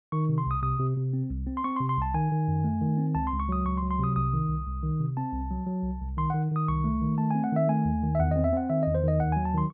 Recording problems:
none

